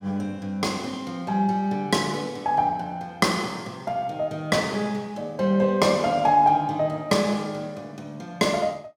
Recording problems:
none

